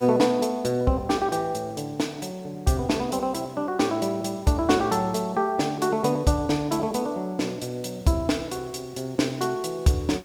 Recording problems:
background hiss; slope -3 dB per octave, SNR 30 dB

